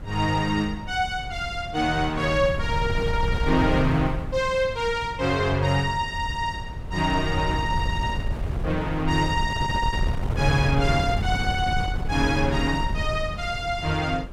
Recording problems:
wind noise; below 130 Hz, SNR 6 dB

